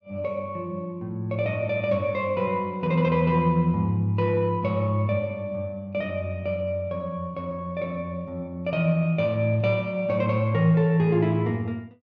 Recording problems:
treble missing; nothing above 7 kHz

